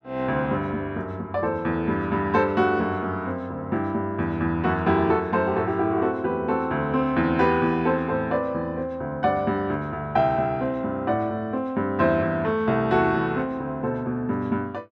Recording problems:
none

